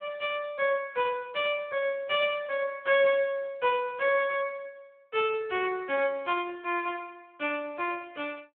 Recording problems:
telephone audio; 320 Hz to 3.4 kHz, Speex

